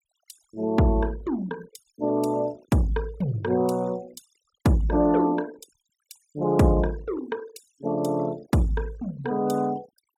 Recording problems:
denoising artefacts; signal-to-artefact ratio 22 dB

